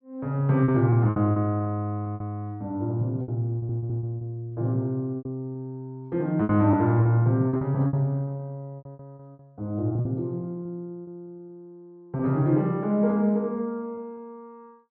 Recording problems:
treble missing; nothing above 8 kHz
lost packets; 9% of the sound replaced, filled with repeated pitch periods
audio stuttering; at 3.5 s

